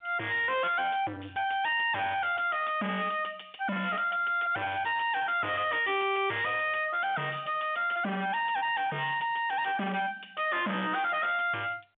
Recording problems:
phone line; 260 Hz to 3.6 kHz, G.711
distortion; soft clipping, signal-to-distortion ratio 5 dB

